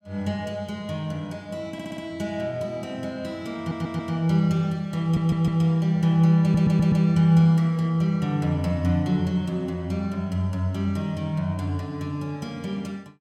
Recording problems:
stutter; 4 times, first at 1.5 s

